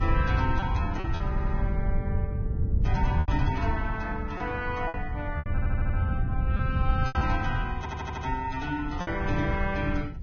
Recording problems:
lossy compression; Vorbis, log-spectral distance 2 dB, nothing above 6.3 kHz
wind noise; below 110 Hz, SNR -2 dB
lost packets; 6% of the sound replaced, filled with repeated pitch periods
stutter; at 1.5 s, at 5.5 s and at 8 s

